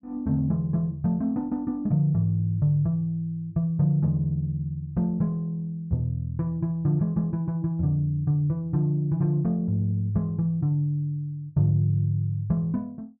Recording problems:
none

